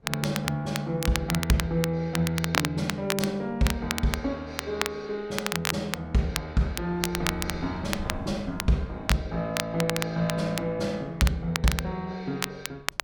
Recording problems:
wind noise; below 120 Hz, SNR 19 dB
crackle; vinyl, SNR 4 dB

